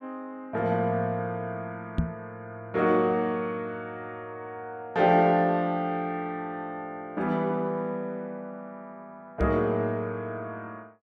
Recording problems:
microphone thump; at 2 s and at 9.5 s; peak +6 dB vs average level

